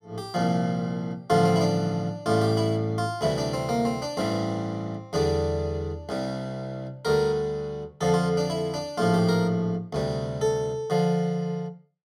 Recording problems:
none

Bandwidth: 15 kHz